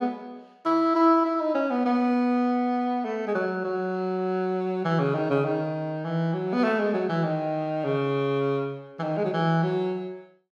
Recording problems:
none

